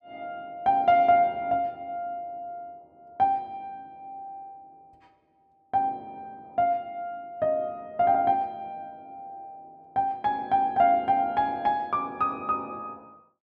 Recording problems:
none

